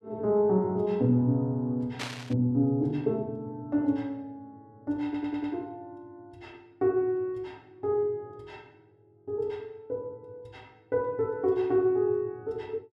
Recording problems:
burst of static; at 2 s; peak -2 dB vs average level
stutter; at 5 s

